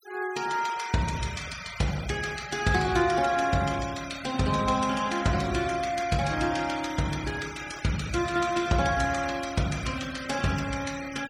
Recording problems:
denoising artefacts; signal-to-artefact ratio 15 dB

